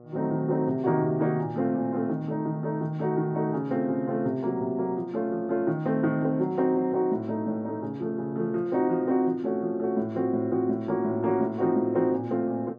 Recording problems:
hum; 60 Hz, harmonics up to 1.3 kHz, SNR 23 dB

